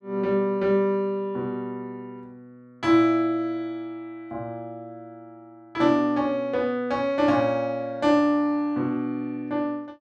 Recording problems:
none

